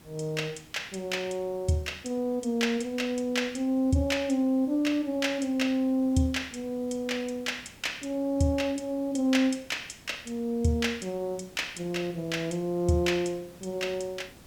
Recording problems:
background hiss; slope -4 dB per octave, SNR 24 dB

